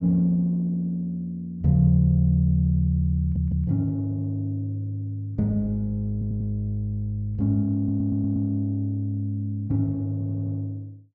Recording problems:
audio stuttering; 4 times, first at 3 s

